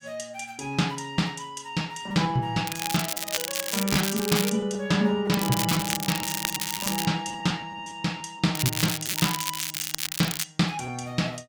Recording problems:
packet loss; 5% of the sound replaced, filled with repeated pitch periods
crackle; from 2.5 to 4.5 s, from 5.5 to 7 s and from 8.5 to 10 s; loose cable, SNR 1 dB

